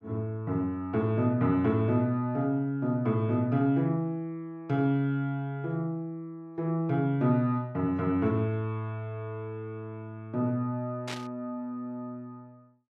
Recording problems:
burst of static; at 11 s; peak -4 dB vs average level

